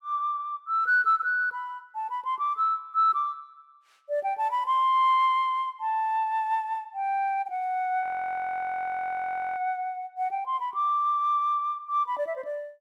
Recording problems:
audio freezing; at 8 s for 1.5 s

